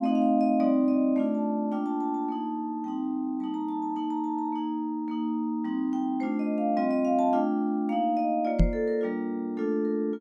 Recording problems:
microphone bump; at 8.5 s; peak +8 dB vs average level

